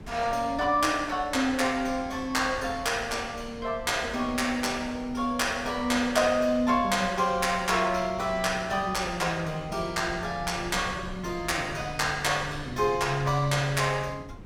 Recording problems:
wind on the microphone; below 220 Hz, SNR 17 dB

